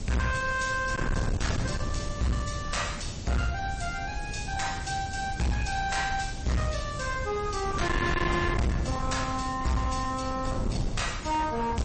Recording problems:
lossy codec; MP3, log-spectral distance 10 dB, nothing above 8.2 kHz
distortion; hard clipping, signal-to-distortion ratio 6 dB
hiss; slope +3 dB per octave, SNR 17 dB
wind on the microphone; below 240 Hz, SNR 5 dB

